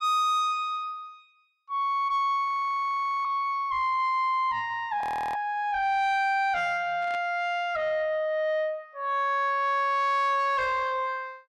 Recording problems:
distortion; soft clipping, signal-to-distortion ratio 11 dB
frozen audio; at 2.5 s for 1 s and at 5 s
static burst; at 7 s; peak -14 dB vs average level

